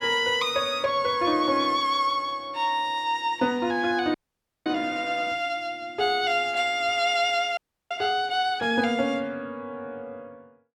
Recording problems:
frozen audio; at 4 s for 0.5 s and at 7.5 s

